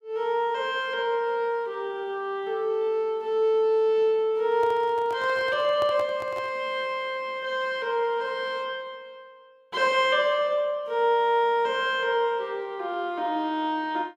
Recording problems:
microphone handling noise; from 4.5 to 6.5 s; peak -8 dB vs average level

